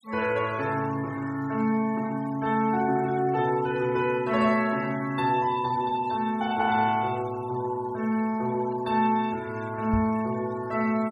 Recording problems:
noise reduction artefacts; signal-to-artefact ratio 21 dB
microphone thump; at 10 s; peak +1 dB vs average level

